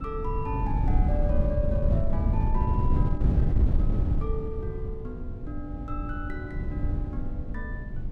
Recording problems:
wind noise; below 110 Hz, SNR -8 dB

